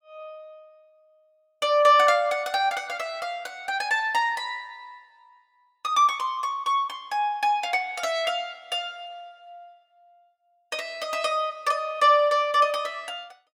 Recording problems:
none

